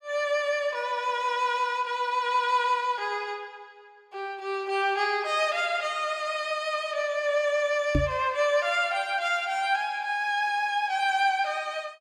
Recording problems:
microphone bump; at 8 s; peak +5 dB vs average level

